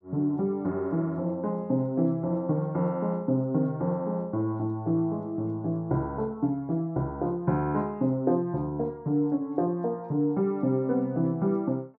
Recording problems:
none

